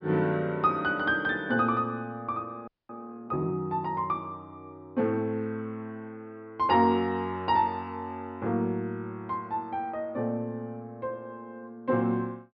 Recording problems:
treble missing; nothing above 5.5 kHz
frozen audio; at 2.5 s

